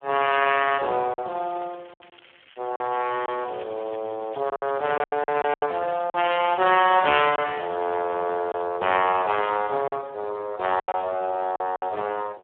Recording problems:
telephone audio; 340 Hz to 3.3 kHz, Speex
lost packets; 7% of the sound replaced, filled with silence
crackle; from 1.5 to 5 s and from 6 to 8.5 s; loose cable, SNR 27 dB

